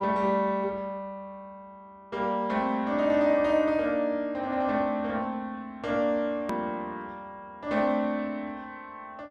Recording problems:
edit click; at 6.5 s

